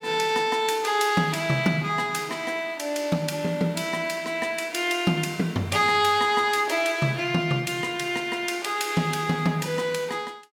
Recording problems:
none

